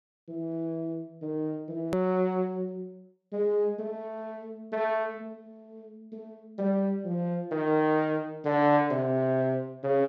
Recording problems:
low-pass filter; nothing above 8 kHz
edit click; at 2 s

